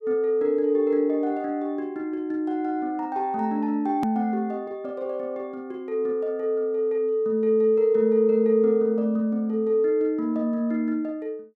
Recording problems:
click at an edit; at 4 s

